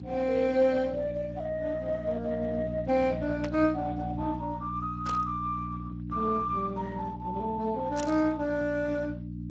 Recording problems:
codec artefacts; Speex, log-spectral distance 3 dB
hum; 60 Hz, harmonics up to 300 Hz, SNR 8 dB
static burst; at 3.5 s, at 5 s and at 8 s; peak -4 dB vs average level

